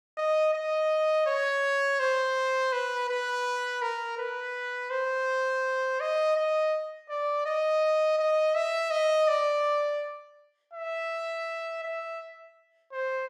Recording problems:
none

